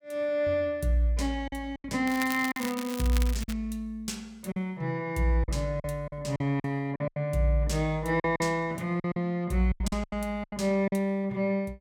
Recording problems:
packet loss; 9% of the sound replaced, filled with silence
crackle; from 2 to 3.5 s; loose cable, SNR 10 dB

